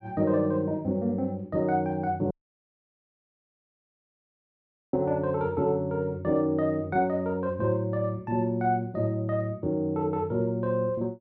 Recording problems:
dropout; at 2.5 s for 2.5 s

